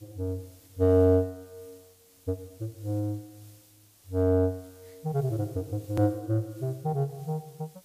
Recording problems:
hiss; SNR 27 dB
click at an edit; at 6 s

